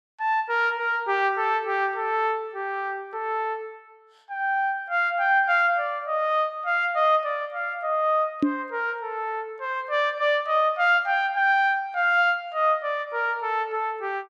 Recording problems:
microphone bump; at 8.5 s; peak +5 dB vs average level

